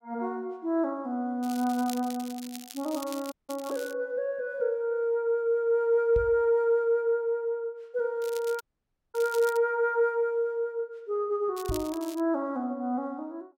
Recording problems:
crackling; from 1.5 to 4 s, from 8 to 9.5 s and at 12 s; loose cable, SNR 16 dB
dropout; at 3.5 s and at 8.5 s for 0.5 s
microphone thump; at 6 s and at 12 s; peak -2 dB vs average level

